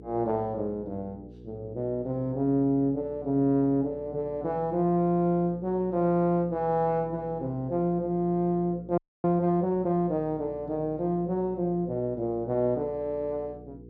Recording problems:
hum; 60 Hz, harmonics up to 480 Hz, SNR 19 dB
audio freezing; at 9 s

